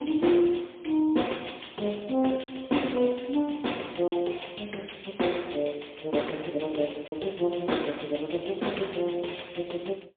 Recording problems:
telephone audio; 220 Hz to 3.7 kHz, AMR-NB, then MP3
lost packets; 1.2% of the sound replaced, filled with silence

